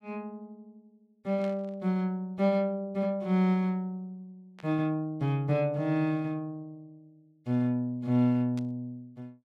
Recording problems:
burst of static; at 1.5 s, at 4.5 s and at 8.5 s; peak -15 dB vs average level

